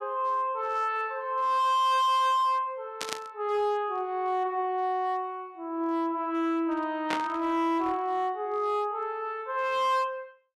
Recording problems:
distortion; hard clipping, signal-to-distortion ratio 12 dB
static burst; at 3 s and at 7 s; peak 0 dB vs average level

